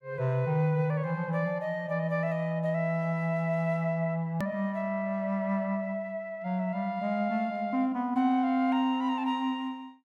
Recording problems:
hard cut with a click; at 4.5 s

